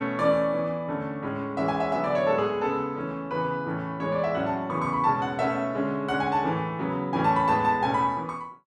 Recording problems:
none

